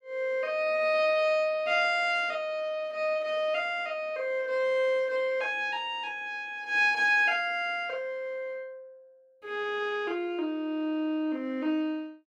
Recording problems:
none

